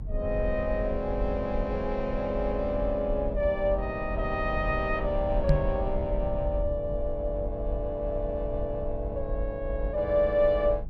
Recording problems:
low-frequency rumble; below 68 Hz, SNR 6 dB
knock on the microphone; at 5.5 s; peak +8 dB vs average level

